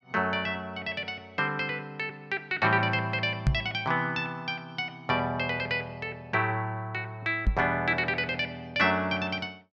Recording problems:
microphone bump; at 3.5 s and at 7.5 s; peak +7 dB vs average level

